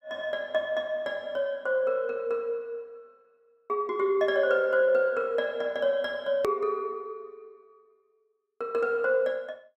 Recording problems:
edit click; at 6.5 s

